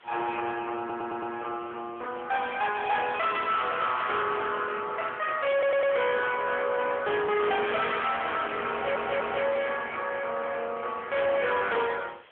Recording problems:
telephone audio; 300 Hz to 3.3 kHz, AMR-NB
distorted audio; hard clipping, uneven, signal-to-distortion ratio 6 dB
background hiss; SNR 27 dB
stutter; at 1 s, at 5.5 s and at 8.5 s
static burst; at 4 s; peak -8 dB vs average level

